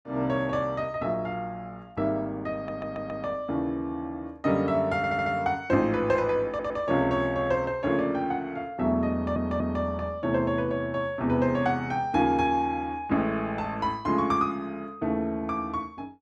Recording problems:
audio stuttering; 4 times, first at 2.5 s

